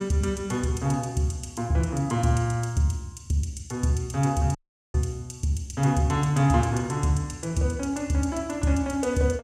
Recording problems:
dropout; at 4.5 s

